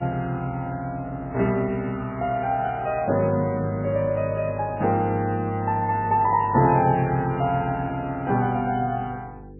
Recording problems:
lossy compression; MP3, log-spectral distance 2 dB, nothing above 2.6 kHz
electrical hum; 50 Hz, harmonics up to 500 Hz, SNR 22 dB

